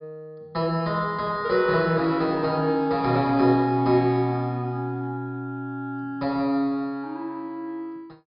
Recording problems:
treble cut off; nothing above 5.5 kHz

